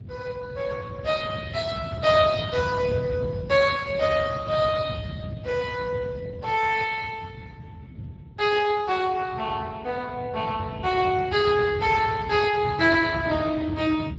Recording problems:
lossy compression; Speex, log-spectral distance 4 dB, nothing above 7.3 kHz
wind on the microphone; below 180 Hz, SNR 11 dB

